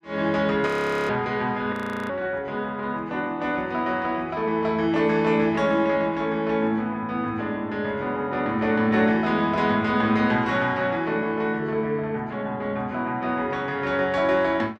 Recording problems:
audio freezing; at 0.5 s and at 1.5 s

